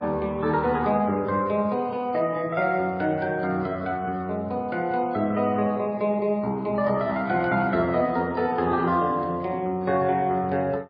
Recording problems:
codec artefacts; MP3, log-spectral distance 2 dB, nothing above 4.6 kHz

